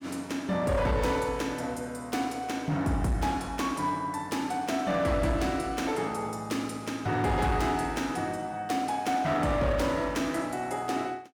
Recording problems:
distorted audio; hard clipping, signal-to-distortion ratio 11 dB

